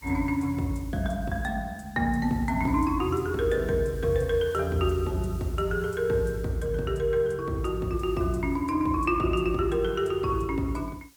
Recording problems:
background hiss; SNR 25 dB

